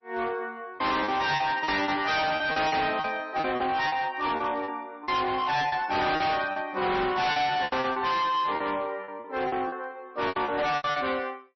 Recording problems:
lossy codec; MP3, log-spectral distance 3 dB, nothing above 5.8 kHz
distorted audio; hard clipping, signal-to-distortion ratio 6 dB
packet loss; 12% of the sound replaced, filled with repeated pitch periods

